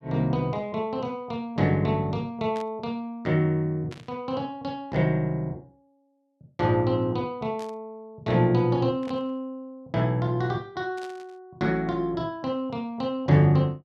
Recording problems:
static burst; 5 times, first at 2.5 s; peak -13 dB vs average level

